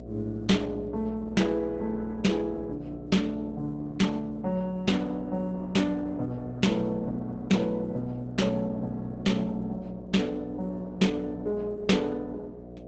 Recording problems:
codec artefacts; Opus, log-spectral distance 2 dB, nothing above 7.8 kHz
hum; 60 Hz, harmonics up to 720 Hz, SNR 14 dB

